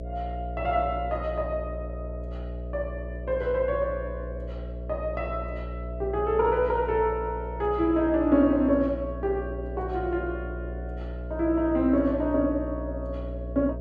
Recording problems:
electrical hum; 60 Hz, harmonics up to 660 Hz, SNR 9 dB

